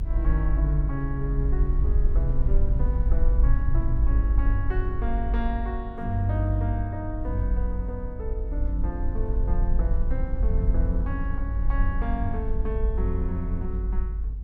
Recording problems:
rumble; below 52 Hz, SNR -4 dB

